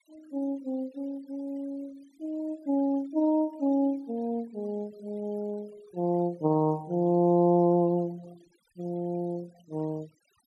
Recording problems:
denoising artefacts; signal-to-artefact ratio 28 dB

